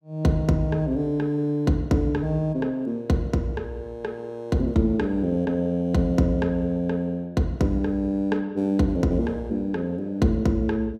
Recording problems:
none

